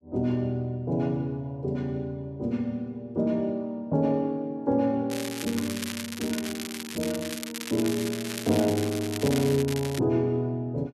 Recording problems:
crackle; from 5 to 10 s; loose cable, SNR 8 dB

